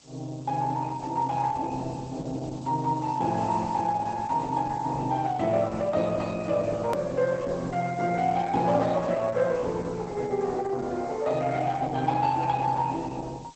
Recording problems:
lossy codec; Opus, log-spectral distance 5 dB, nothing above 13.1 kHz
background hiss; SNR 26 dB
hard cut with a click; at 7 s

